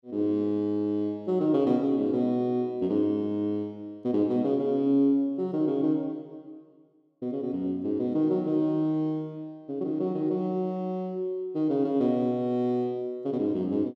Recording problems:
none

